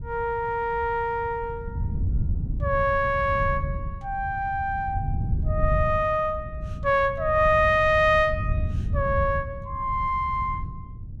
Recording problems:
wind noise; below 120 Hz, SNR 7 dB

